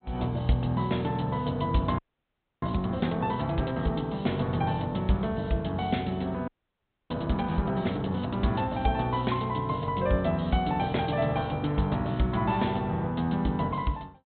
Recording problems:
low-pass filter; nothing above 4 kHz
audio freezing; at 2 s for 0.5 s and at 6.5 s for 0.5 s

